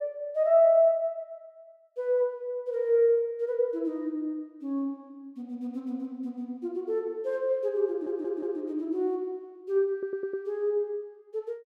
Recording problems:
stutter; at 8 s and at 10 s

